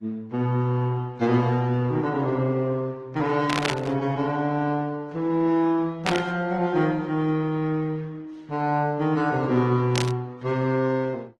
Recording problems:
codec artefacts; AAC, then Opus, log-spectral distance 2 dB
burst of static; at 3.5 s, at 6 s and at 10 s; peak +3 dB vs average level

